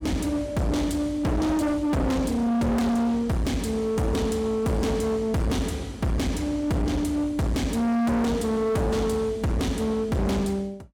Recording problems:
distorted audio; hard clipping, signal-to-distortion ratio 6 dB

